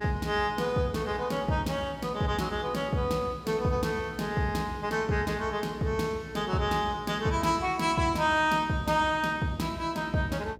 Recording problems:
hum; 60 Hz, harmonics up to 720 Hz, SNR 21 dB

